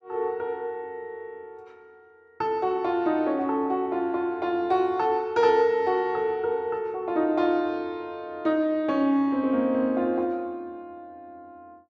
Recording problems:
none

